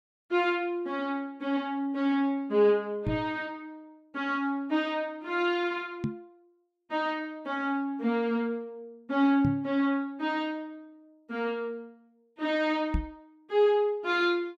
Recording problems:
microphone thump; 4 times, first at 3 s; peak +3 dB vs average level

